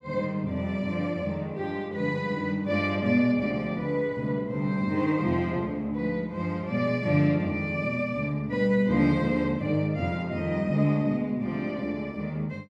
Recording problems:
none

